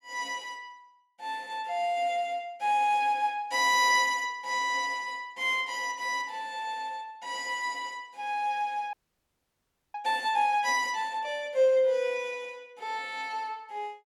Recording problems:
audio freezing; at 9 s for 1 s

